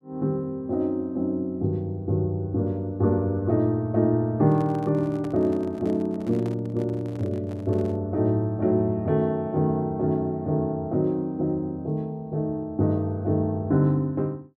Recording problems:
microphone handling noise; from 4.5 to 8 s; peak -10 dB vs average level

